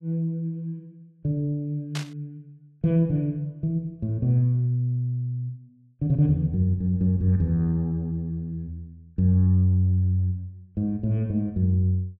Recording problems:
static burst; at 2 s; peak -5 dB vs average level

